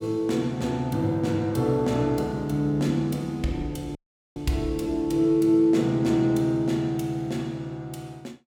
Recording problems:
dropout; at 4 s

